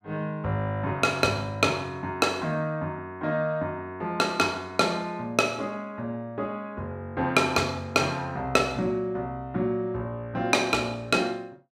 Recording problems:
none

